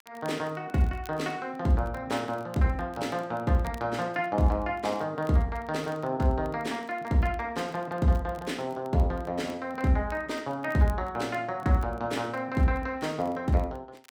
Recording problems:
crackling; vinyl, SNR 28 dB

